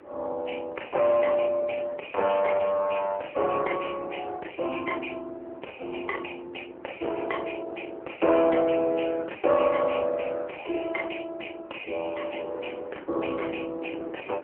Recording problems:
phone line; 280 Hz to 3.1 kHz, AMR-NB
wind noise; below 690 Hz, SNR 20 dB

